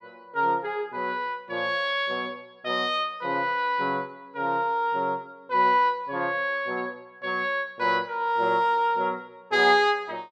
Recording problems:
none

